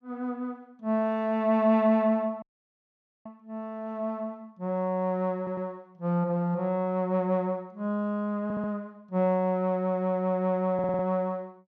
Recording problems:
dropout; at 2.5 s for 1 s
stutter; at 5.5 s, at 8.5 s and at 11 s

